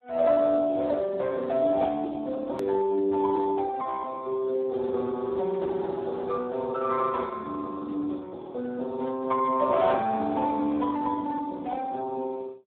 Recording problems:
telephone audio; 240 Hz to 2.1 kHz, Speex
edit click; at 2.5 s

